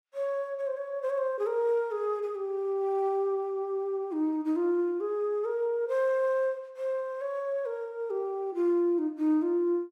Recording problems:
none

